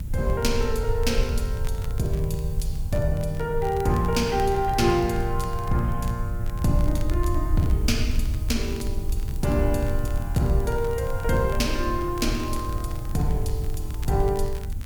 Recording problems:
hiss; slope -2 dB per octave, SNR 22 dB
low-frequency rumble; below 70 Hz, strongest tone 22 Hz, SNR 6 dB
wind noise; below 96 Hz, SNR 7 dB
crackle; vinyl, SNR 22 dB

